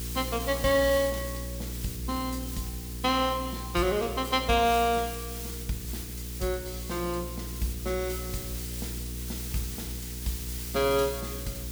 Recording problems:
hum; 60 Hz, harmonics up to 480 Hz, SNR 9 dB
background hiss; slope +2 dB per octave, SNR 9 dB

